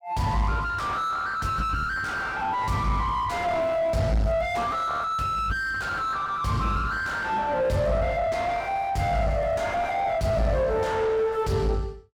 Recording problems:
distortion; soft clipping, signal-to-distortion ratio 6 dB

